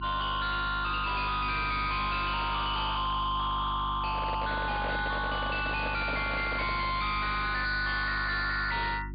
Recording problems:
treble cut off; nothing above 4.7 kHz
distorted audio; hard clipping, signal-to-distortion ratio 6 dB
electrical hum; 50 Hz, harmonics up to 350 Hz, SNR 11 dB
microphone handling noise; from 4 to 7 s; peak -1 dB vs average level

